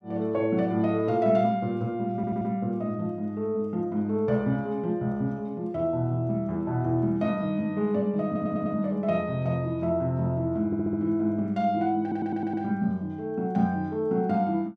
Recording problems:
stutter; 4 times, first at 2 s

